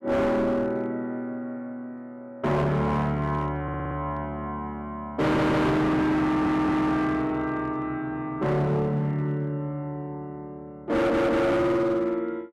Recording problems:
distorted audio; hard clipping, signal-to-distortion ratio 7 dB
audio stuttering; 4 times, first at 3.5 s

